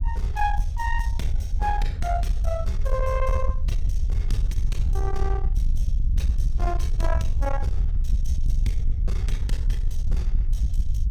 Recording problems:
distorted audio; soft clipping, signal-to-distortion ratio 12 dB
rumble; below 60 Hz, SNR -4 dB

